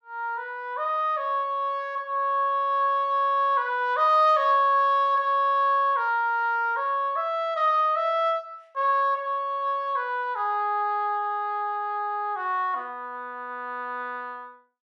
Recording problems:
none

